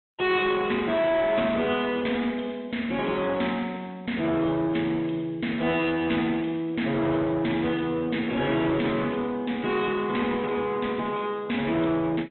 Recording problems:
treble missing; nothing above 3.8 kHz
codec artefacts; AAC, log-spectral distance 3 dB
distorted audio; soft clipping, signal-to-distortion ratio 10 dB

